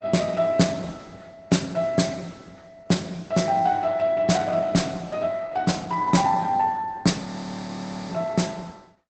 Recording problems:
codec artefacts; Opus, log-spectral distance 4 dB, nothing above 8 kHz
audio freezing; at 7 s for 1 s

